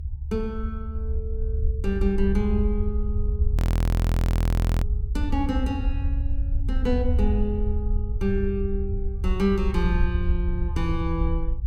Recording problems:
rumble; below 80 Hz, SNR -2 dB
audio freezing; at 3.5 s for 1.5 s

